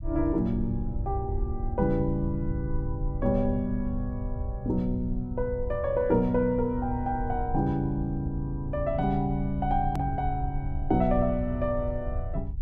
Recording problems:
rumble; below 82 Hz, SNR 7 dB
click at an edit; at 10 s

